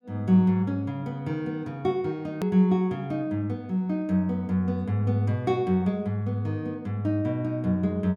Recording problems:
edit click; at 2.5 s

